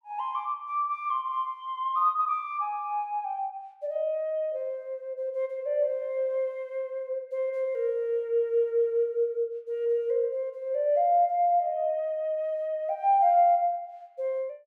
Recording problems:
none

